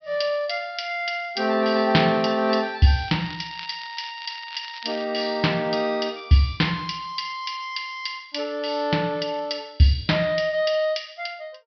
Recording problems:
treble missing; nothing above 5.5 kHz
crackling; from 3 to 5 s; loose cable, SNR 16 dB

